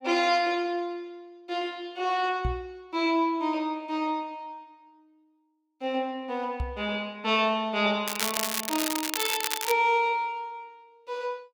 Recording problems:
microphone bump; at 2.5 s and at 6.5 s; peak +2 dB vs average level
crackling; from 8 to 9.5 s; loose cable, SNR 1 dB

